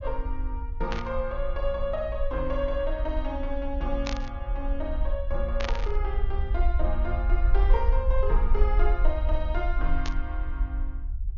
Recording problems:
treble missing; nothing above 6.9 kHz
rumble; below 50 Hz, SNR -3 dB
static burst; 4 times, first at 1 s; peak +4 dB vs average level

